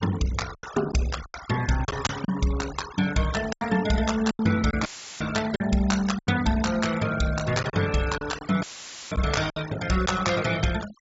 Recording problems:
treble cut off; nothing above 7.5 kHz
noise reduction artefacts; signal-to-artefact ratio 13 dB
lost packets; 7% of the sound replaced, filled with silence
dropout; at 5 s and at 8.5 s; filled with static

